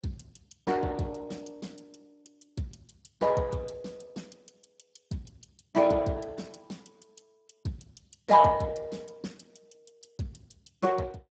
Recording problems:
lossy compression; Speex, log-spectral distance 6 dB, nothing above 7.6 kHz

